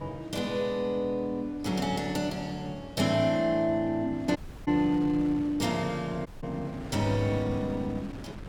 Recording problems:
wind noise; below 390 Hz, SNR 15 dB
audio cutting out; at 4.5 s and at 6.5 s

